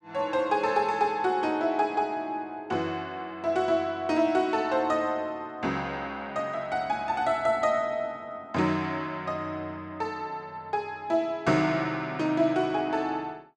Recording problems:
none

